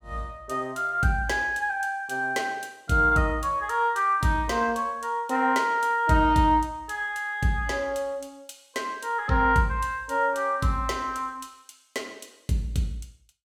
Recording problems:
none

